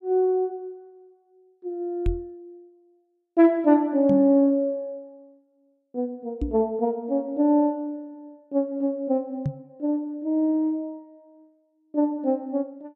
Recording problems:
knock on the microphone; 4 times, first at 2 s; peak +1 dB vs average level

